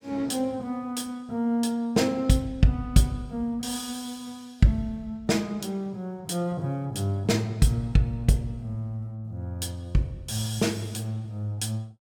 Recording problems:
none

